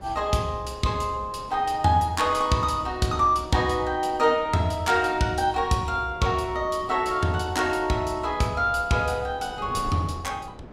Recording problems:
wind noise; below 500 Hz, SNR 19 dB

